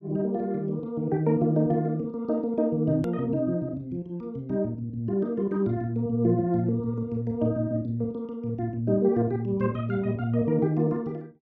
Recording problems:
edit click; at 3 s

